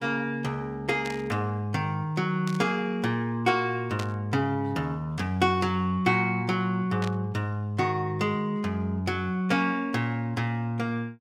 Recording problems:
static burst; 4 times, first at 1 s; peak -5 dB vs average level

